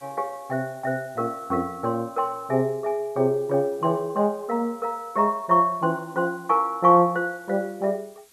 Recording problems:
hiss; slope 0 dB per octave, SNR 29 dB

